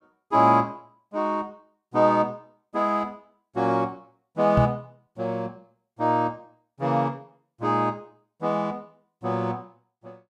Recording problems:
microphone bump; at 4.5 s; peak +6 dB vs average level

